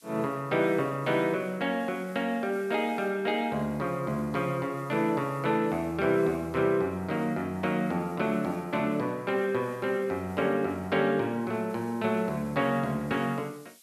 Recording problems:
background hiss; SNR 27 dB

